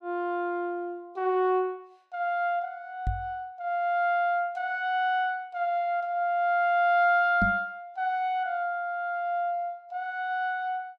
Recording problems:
microphone bump; at 3 s and at 7.5 s; peak +2 dB vs average level

